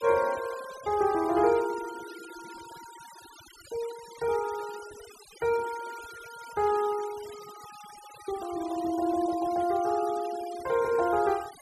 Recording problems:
denoising artefacts; signal-to-artefact ratio 18 dB

